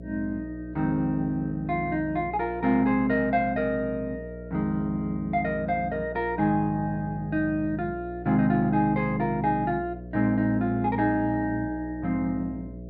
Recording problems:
hum; 60 Hz, harmonics up to 660 Hz, SNR 14 dB

